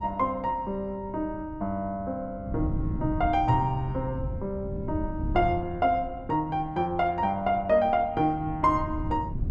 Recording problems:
wind on the microphone; below 140 Hz, SNR 9 dB

